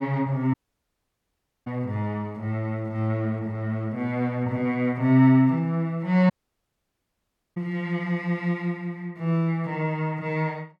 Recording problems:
audio cutting out; at 0.5 s for 1 s and at 6.5 s for 1.5 s

